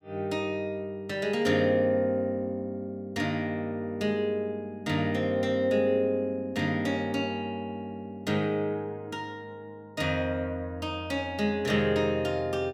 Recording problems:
none

